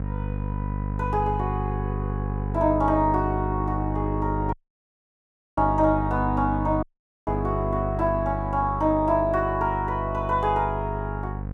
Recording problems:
hum; 50 Hz, harmonics up to 550 Hz, SNR 5 dB
dropout; at 4.5 s for 1 s and at 7 s

